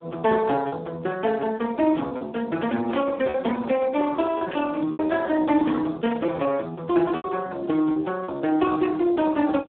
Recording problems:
phone line; 190 Hz to 3.6 kHz, Speex
packet loss; 6% of the sound replaced, filled with repeated pitch periods
burst of static; at 3 s, at 4.5 s and at 6 s; peak -9 dB vs average level

